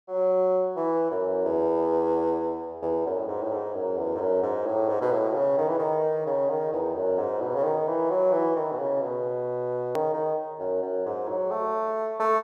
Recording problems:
edit click; at 10 s

